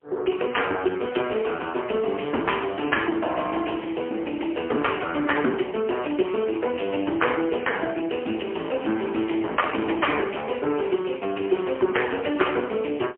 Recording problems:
phone line; 260 Hz to 3.2 kHz, AMR-NB, then MP3

